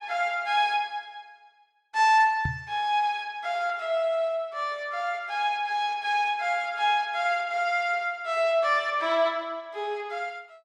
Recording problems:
microphone bump; at 2.5 s; peak 0 dB vs average level

